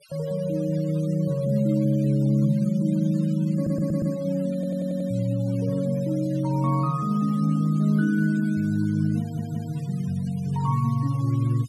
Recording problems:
denoising artefacts; signal-to-artefact ratio 24 dB
audio stuttering; at 3.5 s, at 4.5 s and at 9 s

